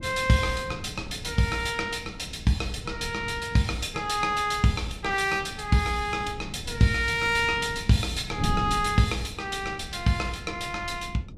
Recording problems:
wind on the microphone; below 190 Hz, SNR 13 dB

